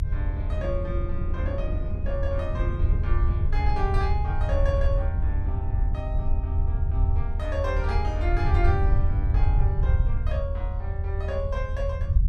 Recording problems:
rumble; below 80 Hz, SNR -7 dB
wind noise; below 92 Hz, SNR 4 dB

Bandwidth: 13 kHz